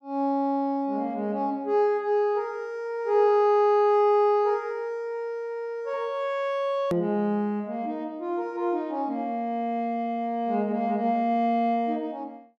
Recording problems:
click at an edit; at 7 s

